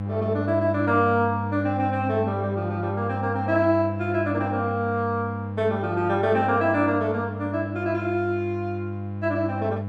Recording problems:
hum; 50 Hz, harmonics up to 1 kHz, SNR 6 dB

